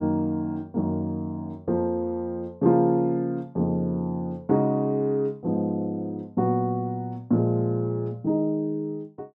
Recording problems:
none

